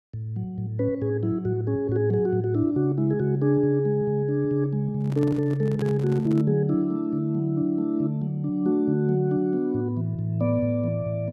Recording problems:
handling noise; from 5 to 6.5 s; peak -7 dB vs average level

